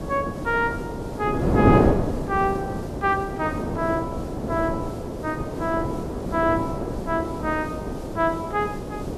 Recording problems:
background hiss; slope 0 dB per octave, SNR 23 dB
wind on the microphone; below 500 Hz, SNR 0 dB

